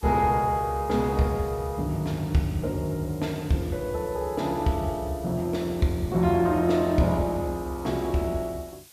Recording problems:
background hiss; slope +1 dB per octave, SNR 23 dB

